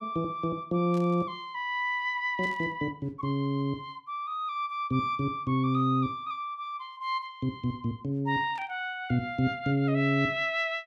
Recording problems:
burst of static; at 1 s, at 2.5 s and at 8.5 s; peak -16 dB vs average level

